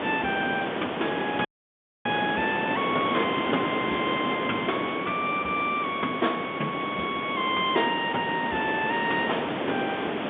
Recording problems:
telephone audio; 190 Hz to 3.6 kHz, G.711
background hiss; SNR 2 dB
dropout; at 1.5 s for 0.5 s

